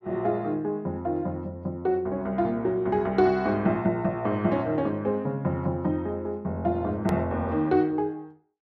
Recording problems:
click at an edit; at 7 s

